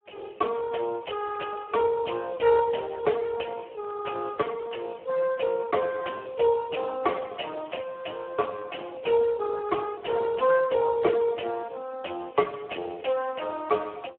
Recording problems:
phone line; 300 Hz to 2 kHz, Speex

